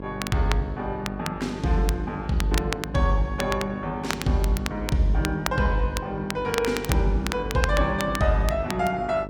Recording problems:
hum; 50 Hz, harmonics up to 1.1 kHz, SNR 12 dB
crackling; vinyl, SNR 9 dB

